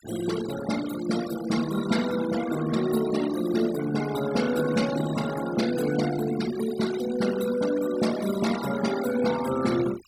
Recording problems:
denoising artefacts; signal-to-artefact ratio 12 dB

